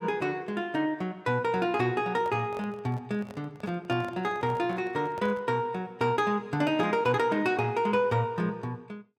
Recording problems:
handling noise; from 2 to 5.5 s; peak -10 dB vs average level

